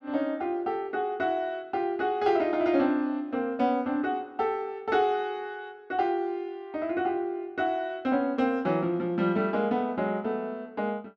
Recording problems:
none

